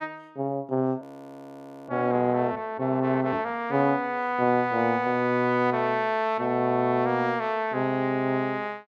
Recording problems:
audio freezing; at 1 s for 1 s

